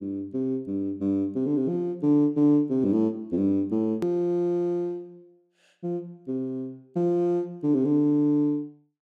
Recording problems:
edit click; at 4 s

